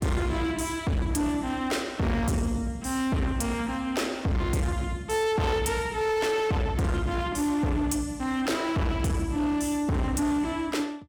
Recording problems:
distorted audio; hard clipping, signal-to-distortion ratio 6 dB

